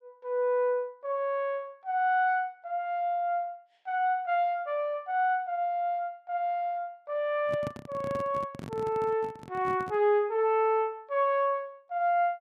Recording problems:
handling noise; from 7.5 to 10 s; peak -4 dB vs average level

